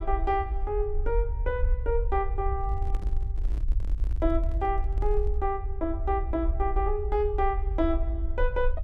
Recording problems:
low-frequency rumble; below 58 Hz, SNR 1 dB
microphone handling noise; from 2.5 to 5.5 s; peak -10 dB vs average level

